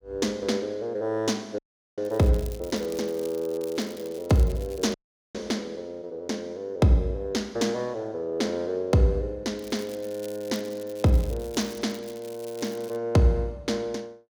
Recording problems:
dropout; at 1.5 s and at 5 s
crackle; from 2 to 5 s and from 9.5 to 13 s; loose cable, SNR 19 dB

